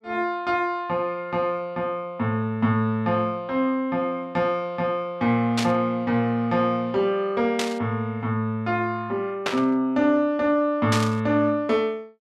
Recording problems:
static burst; 4 times, first at 5.5 s; peak +2 dB vs average level

